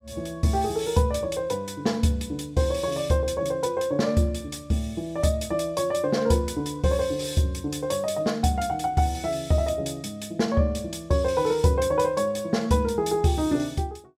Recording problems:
none

